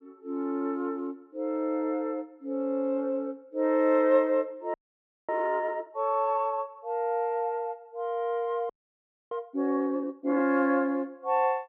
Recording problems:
audio freezing; at 4.5 s for 0.5 s and at 8.5 s for 0.5 s

